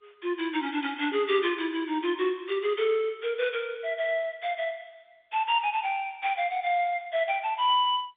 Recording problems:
telephone audio; 260 Hz to 3.7 kHz, G.711

